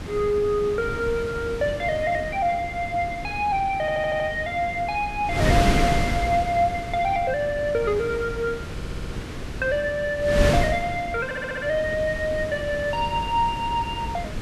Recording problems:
electrical hum; 50 Hz, harmonics up to 1.1 kHz, SNR 21 dB
wind noise; below 500 Hz, SNR 6 dB
stutter; at 4 s, at 8.5 s and at 11 s

